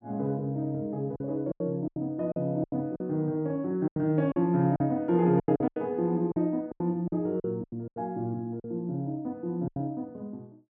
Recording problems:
packet loss; 11% of the sound replaced, filled with silence

